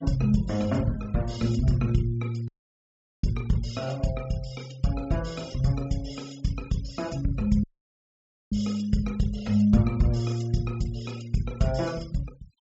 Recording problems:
low-pass filter; nothing above 7.8 kHz
noise reduction artefacts; signal-to-artefact ratio 22 dB
dropout; at 2.5 s for 1 s and at 7.5 s for 1 s

